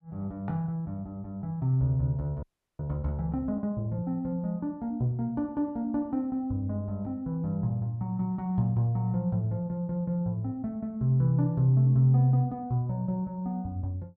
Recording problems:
frozen audio; at 2.5 s

